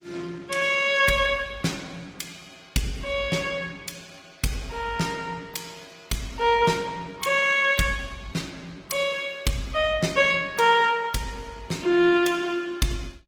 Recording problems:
lossy compression; Opus, log-spectral distance 4 dB, nothing above 19 kHz

